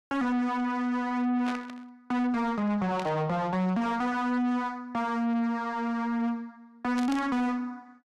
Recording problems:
distortion; soft clipping, signal-to-distortion ratio 7 dB
static burst; at 1.5 s, at 3 s and at 7 s; peak -6 dB vs average level

